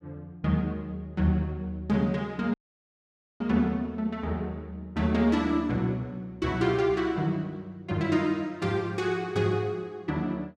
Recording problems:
dropout; at 2.5 s for 1 s

